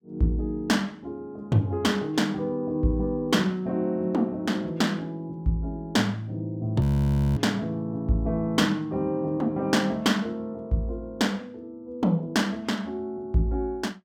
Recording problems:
audio freezing; at 7 s for 0.5 s

